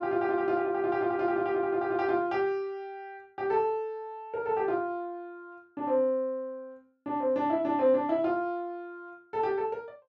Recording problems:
none

